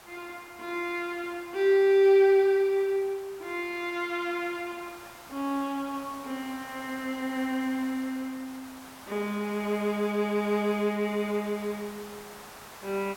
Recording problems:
hiss; SNR 19 dB

